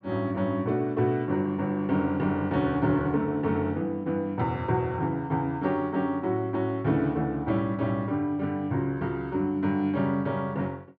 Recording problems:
none

